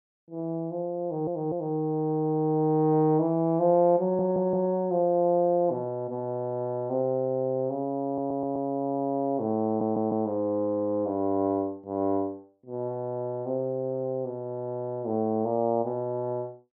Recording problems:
stutter; 4 times, first at 1 s

